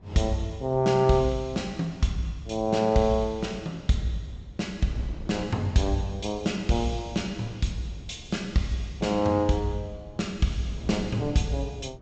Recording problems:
treble missing; nothing above 8 kHz
wind noise; below 230 Hz, SNR 19 dB

